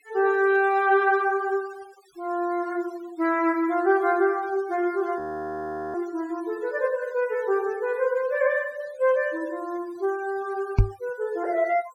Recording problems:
denoising artefacts; signal-to-artefact ratio 24 dB
audio freezing; at 5 s for 1 s
microphone thump; at 11 s; peak +9 dB vs average level

